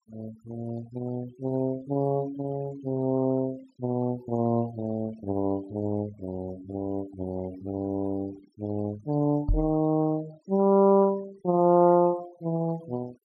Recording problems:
noise reduction artefacts; signal-to-artefact ratio 22 dB
knock on the microphone; at 9.5 s; peak +3 dB vs average level

